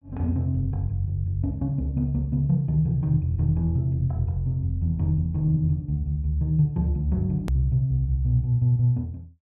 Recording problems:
click at an edit; at 7.5 s

